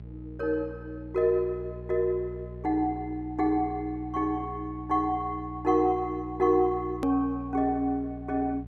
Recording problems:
hum; 60 Hz, harmonics up to 420 Hz, SNR 14 dB
click at an edit; at 7 s

